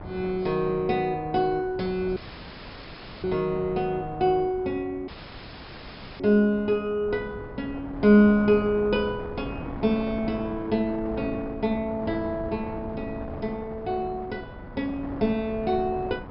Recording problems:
low-pass filter; nothing above 5.3 kHz
wind noise; below 580 Hz, SNR 13 dB
audio cutting out; at 2 s for 1 s and at 5 s for 1 s

